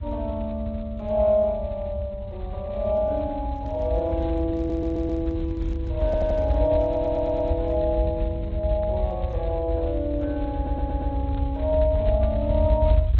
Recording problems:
codec artefacts; Speex, then AAC, log-spectral distance 2 dB
low-frequency rumble; below 86 Hz, SNR 3 dB
microphone handling noise; from 3.5 to 8 s; peak -11 dB vs average level
audio stuttering; 4 times, first at 4.5 s

